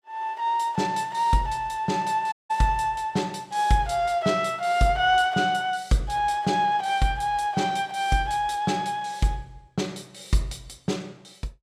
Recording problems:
audio cutting out; at 2.5 s

